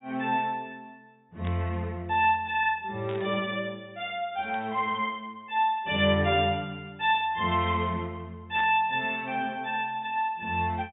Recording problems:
treble cut off; nothing above 4 kHz
burst of static; 4 times, first at 1.5 s; peak -10 dB vs average level

